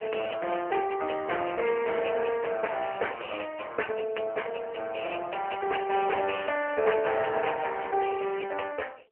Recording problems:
telephone audio; 340 Hz to 2.9 kHz, AMR-NB

